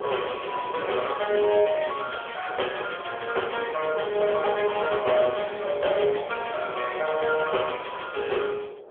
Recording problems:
telephone audio; 300 Hz to 3.4 kHz, AMR-NB
wind on the microphone; below 600 Hz, SNR 13 dB

